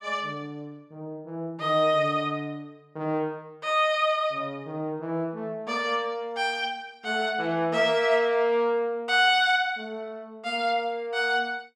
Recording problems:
none

